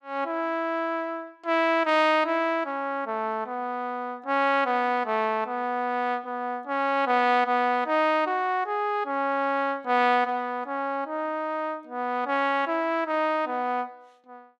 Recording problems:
none

